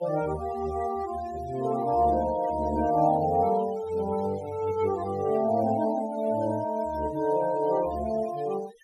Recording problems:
denoising artefacts; signal-to-artefact ratio 18 dB

